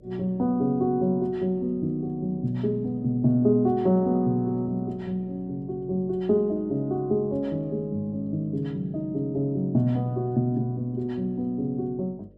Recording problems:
hum; 50 Hz, harmonics up to 600 Hz, SNR 27 dB

